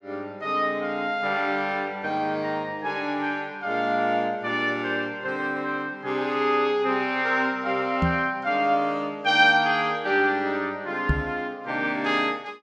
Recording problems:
microphone thump; at 8 s and at 11 s; peak +4 dB vs average level

